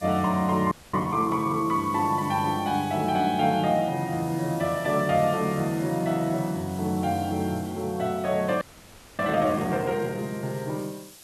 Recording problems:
hiss; slope 0 dB per octave, SNR 20 dB
frozen audio; at 0.5 s and at 8.5 s for 0.5 s

